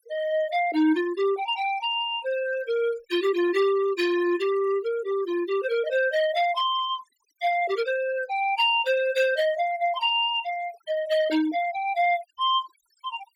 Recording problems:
noise reduction artefacts; signal-to-artefact ratio 16 dB

